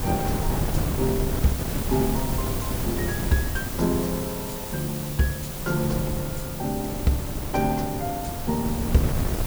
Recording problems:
hiss; slope -3 dB per octave, SNR 5 dB
wind on the microphone; below 240 Hz, SNR 3 dB

